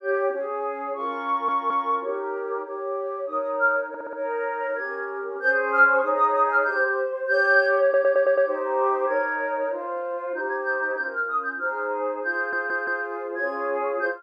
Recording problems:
stutter; 4 times, first at 1.5 s

